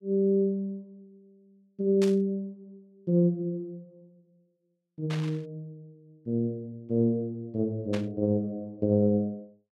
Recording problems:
static burst; at 2 s, at 5 s and at 8 s; peak -6 dB vs average level

